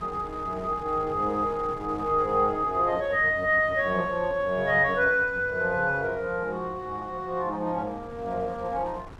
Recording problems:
wind noise; below 890 Hz, SNR 19 dB

